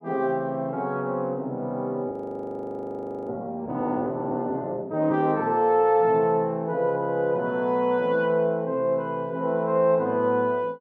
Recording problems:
frozen audio; at 2 s for 1 s

